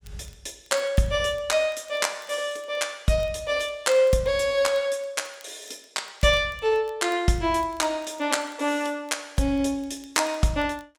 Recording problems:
crackle; vinyl, SNR 29 dB

